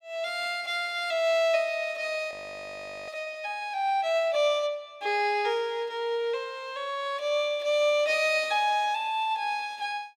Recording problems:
frozen audio; at 2.5 s for 1 s

